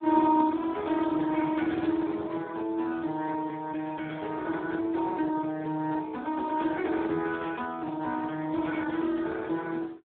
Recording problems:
phone line; 170 Hz to 3.3 kHz, Speex

